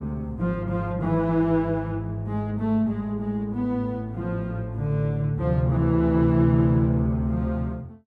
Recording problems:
none

